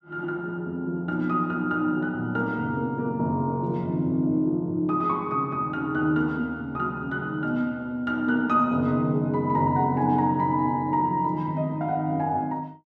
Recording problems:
none

